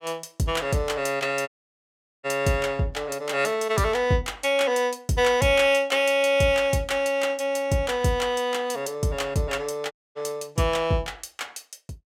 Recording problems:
dropout; at 1.5 s for 1 s and at 10 s

